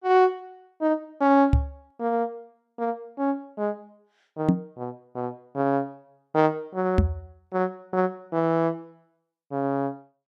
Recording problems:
microphone bump; at 1.5 s, at 4.5 s and at 7 s; peak +9 dB vs average level

